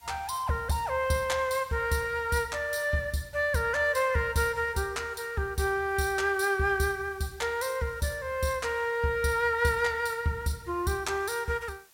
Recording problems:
background hiss; slope 0 dB per octave, SNR 28 dB

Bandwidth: 16.5 kHz